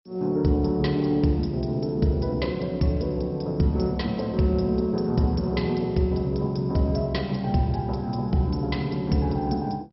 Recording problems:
codec artefacts; MP2, log-spectral distance 3 dB, nothing above 5.5 kHz

